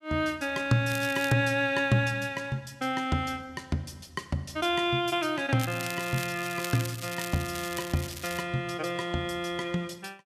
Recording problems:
crackle; at 1 s and from 5.5 to 8.5 s; loose cable, SNR 10 dB

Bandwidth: 14.5 kHz